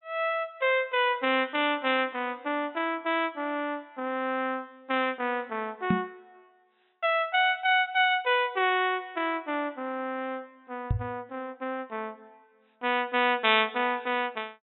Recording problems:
treble missing; nothing above 3.8 kHz
knock on the microphone; at 6 s and at 11 s; peak +5 dB vs average level

